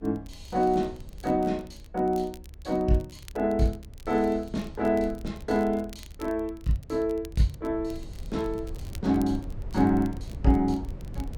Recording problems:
rumble; below 90 Hz, SNR 14 dB
crackle; vinyl, SNR 26 dB

